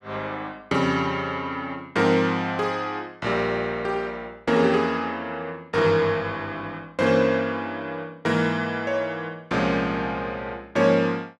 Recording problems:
none

